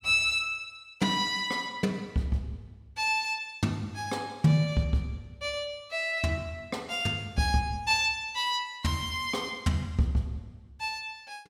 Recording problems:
none

